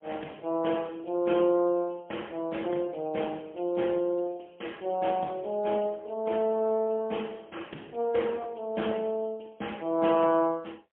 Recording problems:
telephone audio; 240 Hz to 3.4 kHz, AMR-NB, then MP3

